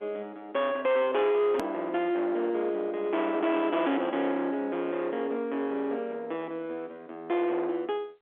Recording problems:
phone line; 280 Hz to 2.9 kHz, G.711
distorted audio; soft clipping, signal-to-distortion ratio 9 dB
edit click; at 1.5 s

